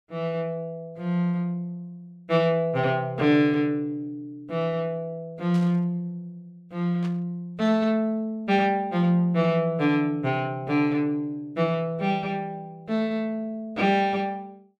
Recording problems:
burst of static; at 5.5 s and at 7 s; peak -14 dB vs average level

